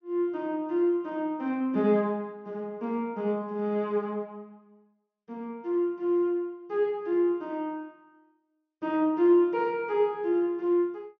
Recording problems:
treble cut off; nothing above 6.6 kHz

